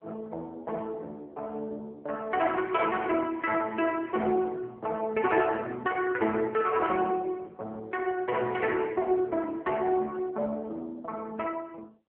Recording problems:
phone line; 260 Hz to 3.3 kHz, AMR-NB

